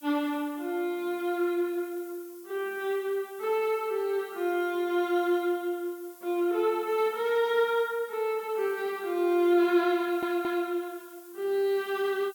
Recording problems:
background hiss; slope +5 dB per octave, SNR 22 dB
audio stuttering; at 10 s

